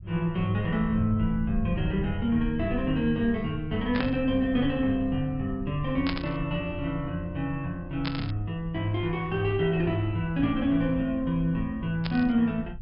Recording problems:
treble cut off; nothing above 5.5 kHz
rumble; below 100 Hz, SNR 12 dB
static burst; 4 times, first at 4 s; peak -1 dB vs average level

